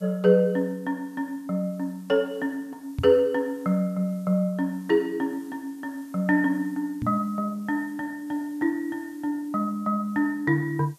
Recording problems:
background hiss; SNR 29 dB
knock on the microphone; at 3 s and at 7 s; peak 0 dB vs average level

